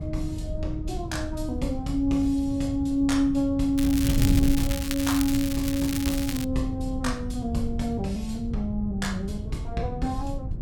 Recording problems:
wind noise; below 130 Hz, SNR 5 dB
crackling; from 4 to 6.5 s; loose cable, SNR 6 dB

